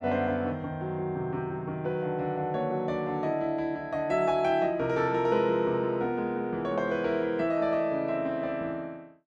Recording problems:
none

